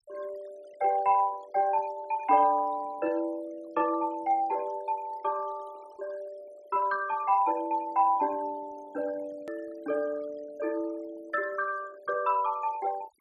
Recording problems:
denoising artefacts; signal-to-artefact ratio 23 dB
edit click; at 9.5 s

